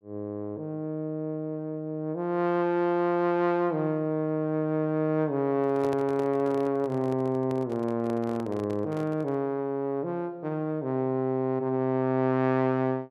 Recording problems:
handling noise; from 5.5 to 9.5 s; peak -5 dB vs average level

